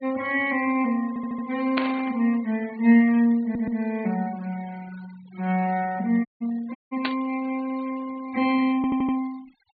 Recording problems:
low-pass filter; nothing above 4.6 kHz
denoising artefacts; signal-to-artefact ratio 22 dB
stutter; at 1 s, at 3.5 s and at 9 s
static burst; at 2 s and at 7 s; peak +2 dB vs average level
dropout; at 6.5 s and at 7 s

